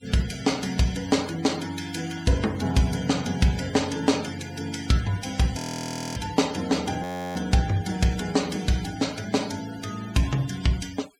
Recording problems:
denoising artefacts; signal-to-artefact ratio 16 dB
frozen audio; at 5.5 s for 0.5 s and at 7 s

